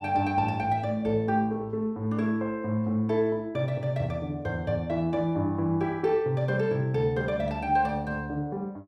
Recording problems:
none

